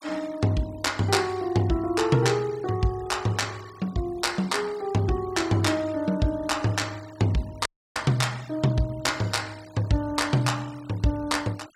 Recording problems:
denoising artefacts; signal-to-artefact ratio 22 dB
audio cutting out; at 7.5 s

